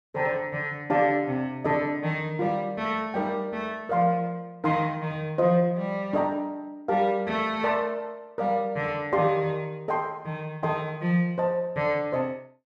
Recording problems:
none

